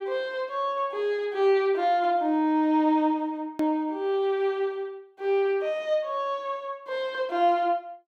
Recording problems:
edit click; at 3.5 s

